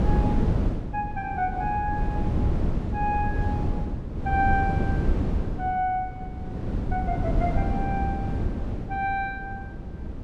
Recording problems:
wind noise; below 220 Hz, SNR -1 dB

